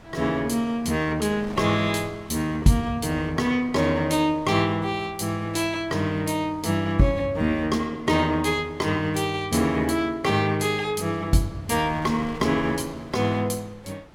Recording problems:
wind on the microphone; below 1.2 kHz, SNR 22 dB

